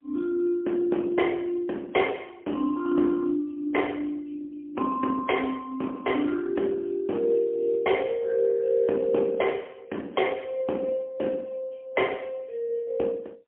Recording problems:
telephone audio; 240 Hz to 3.2 kHz, AMR-NB, then MP3

